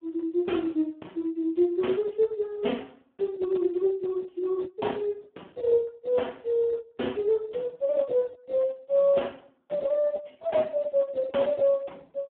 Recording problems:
telephone audio; 190 Hz to 3.5 kHz, Speex

